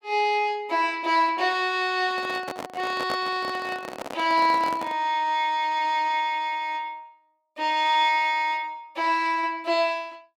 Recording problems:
microphone handling noise; from 2 to 5 s; peak -4 dB vs average level

